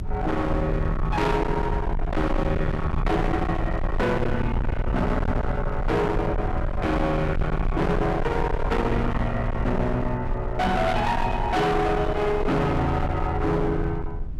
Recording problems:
distorted audio; hard clipping, signal-to-distortion ratio 6 dB
rumble; below 170 Hz, SNR 5 dB

